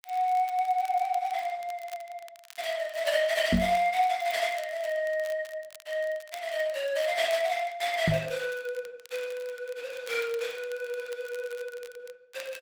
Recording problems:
codec artefacts; Opus, log-spectral distance 3 dB, nothing above 19 kHz
crackling; vinyl, SNR 21 dB
knock on the microphone; at 3.5 s and at 8 s; peak +9 dB vs average level

